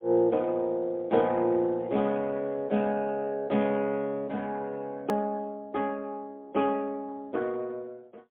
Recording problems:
telephone audio; 150 Hz to 3.7 kHz, AMR-NB, then MP3
edit click; at 5 s

